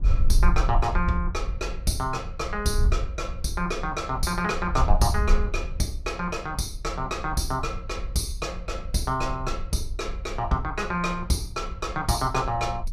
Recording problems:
wind on the microphone; below 58 Hz, SNR 4 dB

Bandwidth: 15 kHz